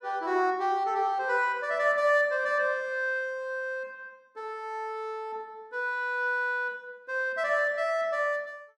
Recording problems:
none

